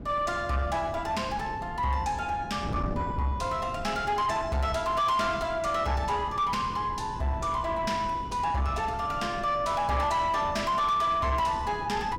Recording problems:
distorted audio; soft clipping, signal-to-distortion ratio 11 dB
wind noise; below 300 Hz, SNR 12 dB

